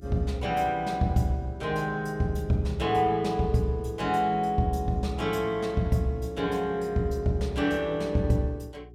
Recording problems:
hum; 60 Hz, harmonics up to 420 Hz, SNR 22 dB

